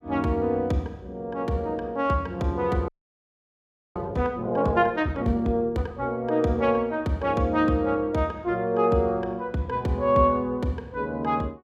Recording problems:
audio freezing; at 3 s for 1 s

